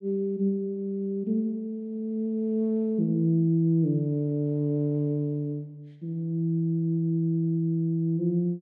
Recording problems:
none

